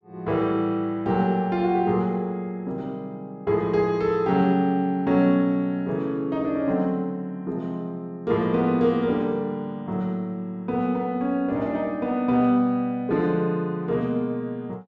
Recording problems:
none

